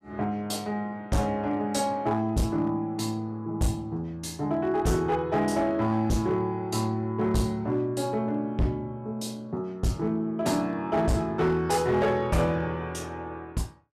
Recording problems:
distortion; hard clipping, signal-to-distortion ratio 10 dB

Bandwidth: 14.5 kHz